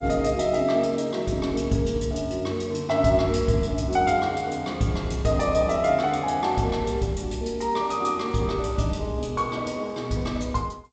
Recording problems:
lossy codec; G.722, log-spectral distance 3 dB, nothing above 7.8 kHz

